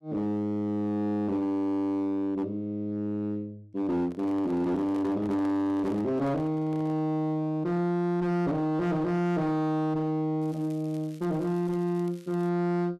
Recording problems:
distortion; hard clipping, signal-to-distortion ratio 10 dB
handling noise; from 4 to 7 s; peak -9 dB vs average level
crackle; from 10 to 12 s; loose cable, SNR 28 dB

